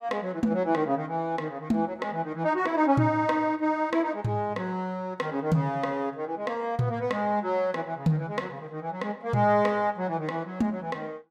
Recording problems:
none

